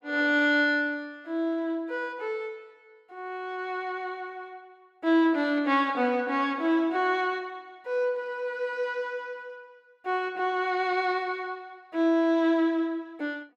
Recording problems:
none

